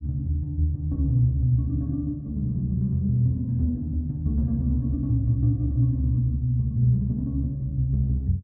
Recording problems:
none

